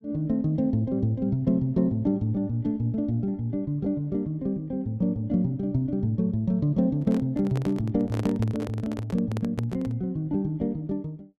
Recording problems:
microphone handling noise; from 7 to 10 s; peak -3 dB vs average level

